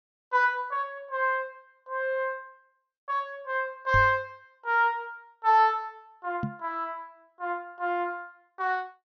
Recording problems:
low-pass filter; nothing above 6.4 kHz
microphone bump; at 4 s and at 6.5 s; peak +1 dB vs average level

